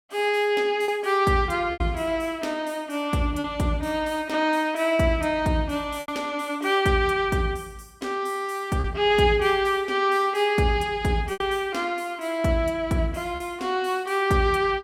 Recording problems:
lost packets; 3% of the sound replaced, filled with repeated pitch periods

